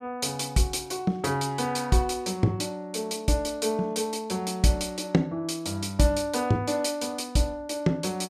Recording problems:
none

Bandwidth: 14 kHz